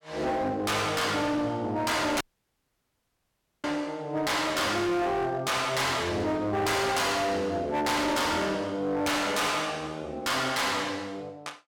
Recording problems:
distortion; hard clipping, signal-to-distortion ratio 6 dB
dropout; at 2 s for 1.5 s

